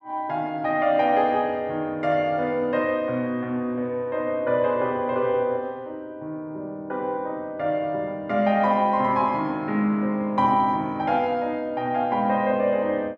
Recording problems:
none

